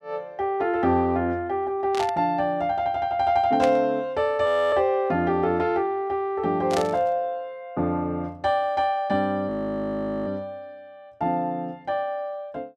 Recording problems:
burst of static; at 2 s, at 3.5 s and at 6.5 s; peak -4 dB vs average level
audio freezing; at 4.5 s and at 9.5 s for 1 s

